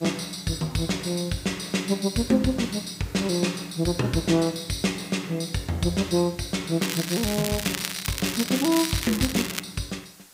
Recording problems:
hiss; slope -1 dB per octave, SNR 23 dB
crackle; from 7 to 9.5 s; loose cable, SNR 4 dB

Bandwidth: 15.5 kHz